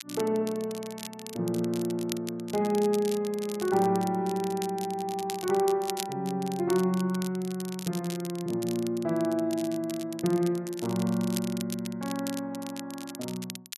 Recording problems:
crackle; vinyl, SNR 13 dB

